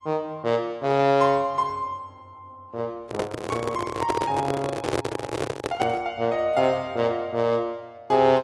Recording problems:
lossy codec; AAC, log-spectral distance 2 dB, nothing above 10.4 kHz
handling noise; from 3 to 6 s; peak +3 dB vs average level

